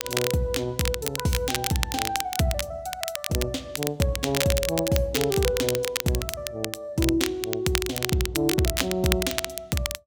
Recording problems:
crackling; vinyl, SNR 3 dB

